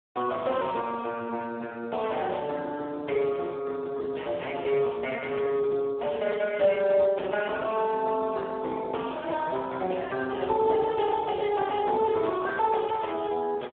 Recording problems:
telephone audio; 260 Hz to 2.8 kHz, Speex

